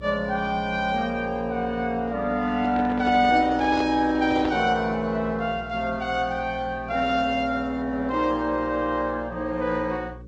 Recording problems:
lossy compression; G.722, then Vorbis, log-spectral distance 2 dB, nothing above 7.8 kHz
hum; 60 Hz, harmonics up to 540 Hz, SNR 18 dB
handling noise; from 2.5 to 4.5 s; peak -4 dB vs average level

